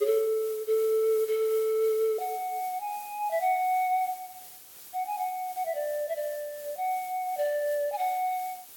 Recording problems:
background hiss; slope 0 dB per octave, SNR 15 dB

